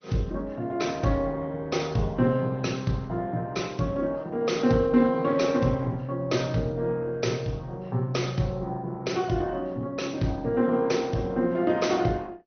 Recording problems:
low-pass filter; nothing above 6.2 kHz
lossy codec; Opus, log-spectral distance 2 dB

